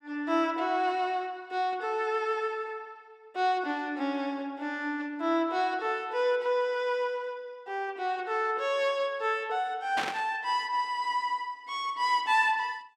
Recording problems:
burst of static; at 10 s; peak +1 dB vs average level

